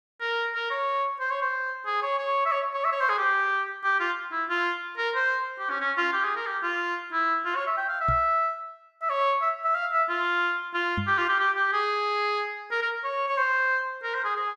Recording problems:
knock on the microphone; at 8 s and at 11 s; peak -1 dB vs average level

